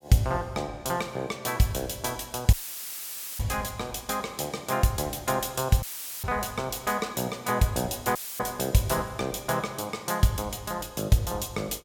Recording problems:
audio cutting out; at 2.5 s for 1 s, at 6 s and at 8 s; filled with static

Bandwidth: 17 kHz